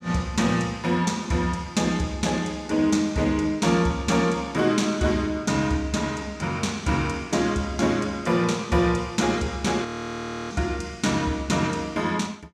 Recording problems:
frozen audio; at 10 s for 0.5 s

